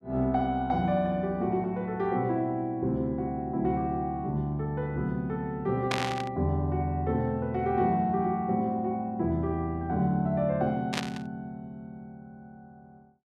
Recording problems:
static burst; at 6 s and at 11 s; peak +2 dB vs average level

